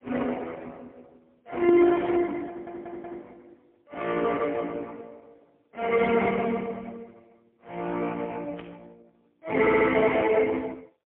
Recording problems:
phone line; 260 Hz to 3.5 kHz, AMR-NB, then MP3
burst of static; 4 times, first at 2 s; peak -14 dB vs average level
audio stuttering; at 2.5 s and at 9.5 s

